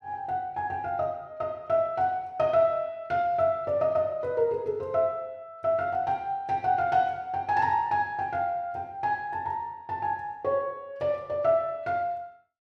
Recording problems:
none

